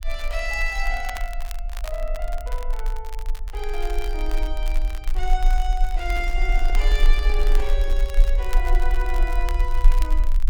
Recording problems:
low-frequency rumble; below 38 Hz, strongest tone 24 Hz, SNR -5 dB
crackle; vinyl, SNR 12 dB
handling noise; from 6 to 8 s; peak -5 dB vs average level

